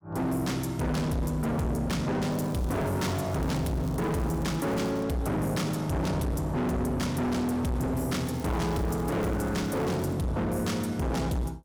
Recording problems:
distortion; hard clipping, uneven, signal-to-distortion ratio 6 dB
crackling; from 2.5 to 5 s and from 8.5 to 10 s; loose cable, SNR 23 dB

